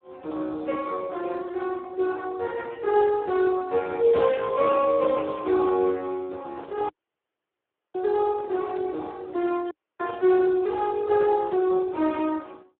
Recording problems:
telephone audio; 280 Hz to 2.2 kHz, Speex
microphone handling noise; at 6.5 s; peak -13 dB vs average level
dropout; at 7 s for 1 s and at 9.5 s

